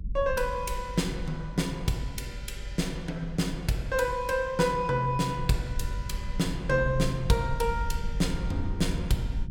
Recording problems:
low-frequency rumble; below 68 Hz, SNR 8 dB

